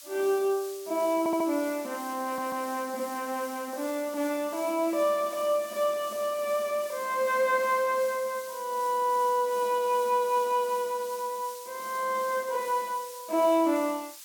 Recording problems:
background hiss; slope +5 dB per octave, SNR 15 dB
stutter; at 1 s and at 2.5 s

